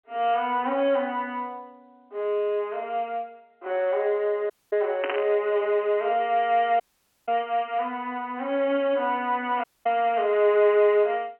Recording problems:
telephone audio; 260 Hz to 3.2 kHz, G.711
audio cutting out; at 4.5 s, at 7 s and at 9.5 s
burst of static; at 5 s and at 7.5 s; peak -1 dB vs average level

